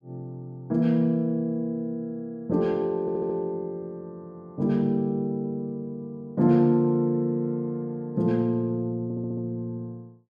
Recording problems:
audio stuttering; at 3 s and at 9 s

